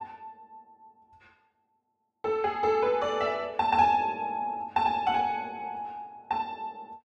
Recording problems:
none

